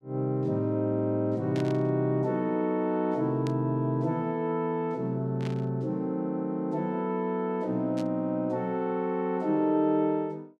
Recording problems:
burst of static; 4 times, first at 1.5 s; peak -10 dB vs average level

